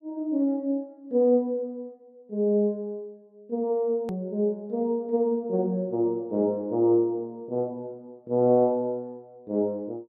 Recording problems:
hard cut with a click; at 4 s

